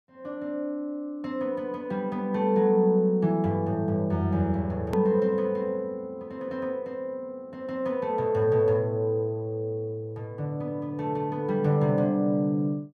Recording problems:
edit click; at 5 s

